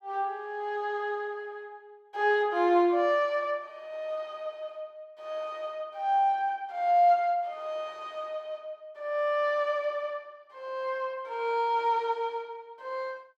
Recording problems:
none

